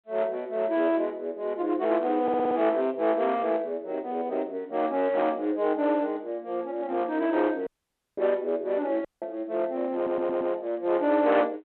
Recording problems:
phone line; 280 Hz to 4 kHz, G.726
distortion; hard clipping, uneven, signal-to-distortion ratio 11 dB
audio stuttering; at 2 s and at 10 s
dropout; at 7.5 s for 0.5 s and at 9 s

